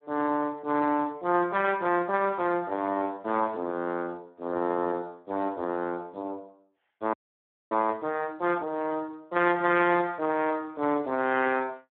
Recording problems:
telephone audio; 220 Hz to 3.6 kHz, Speex
audio freezing; at 7 s for 0.5 s

